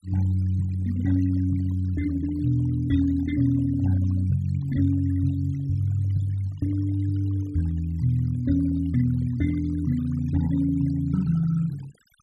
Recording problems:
noise reduction artefacts; signal-to-artefact ratio 22 dB

